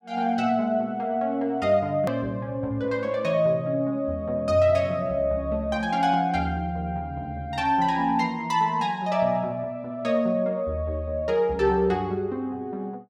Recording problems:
edit click; at 2 s

